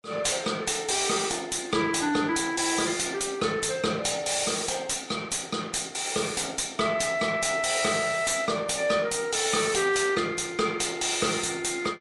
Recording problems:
lossy codec; MP3, log-spectral distance 7 dB, nothing above 11.3 kHz
distorted audio; soft clipping, signal-to-distortion ratio 11 dB

